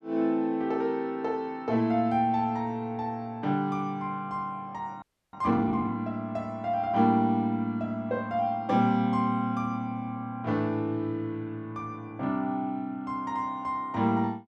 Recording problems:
frozen audio; at 5 s

